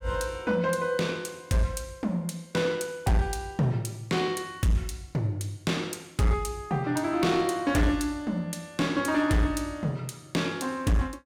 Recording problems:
distortion; hard clipping, signal-to-distortion ratio 11 dB

